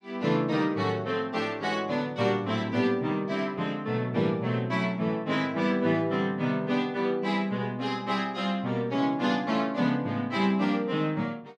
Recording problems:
none

